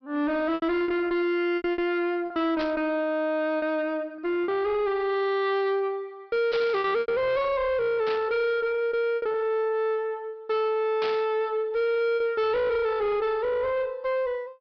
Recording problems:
treble missing; nothing above 5.5 kHz
distorted audio; soft clipping, signal-to-distortion ratio 7 dB
packet loss; 5% of the sound replaced, filled with repeated pitch periods
static burst; 4 times, first at 2.5 s; peak -5 dB vs average level

